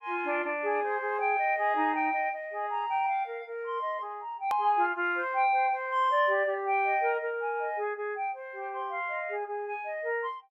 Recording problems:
click at an edit; at 4.5 s

